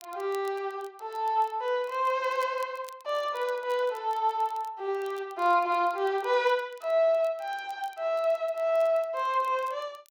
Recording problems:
crackle; vinyl, SNR 28 dB

